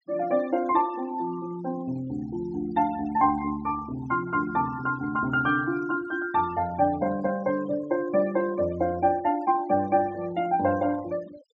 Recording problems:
low-pass filter; nothing above 8 kHz
denoising artefacts; signal-to-artefact ratio 20 dB

